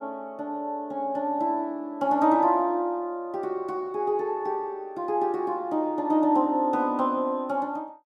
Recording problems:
none

